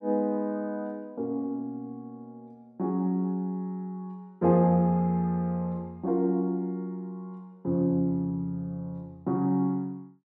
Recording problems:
none

